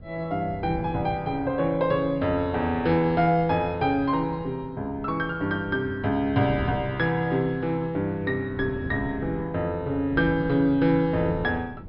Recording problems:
treble cut off; nothing above 5.5 kHz
wind noise; below 250 Hz, SNR 15 dB

